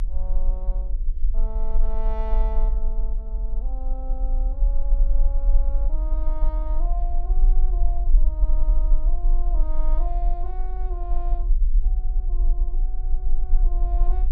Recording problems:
hum; 50 Hz, harmonics up to 600 Hz, SNR 14 dB
low-frequency rumble; below 40 Hz, strongest tone 18 Hz, SNR -15 dB

